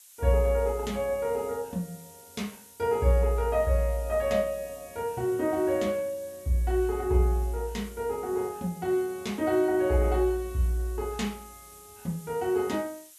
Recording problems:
hiss; slope +5 dB per octave, SNR 21 dB

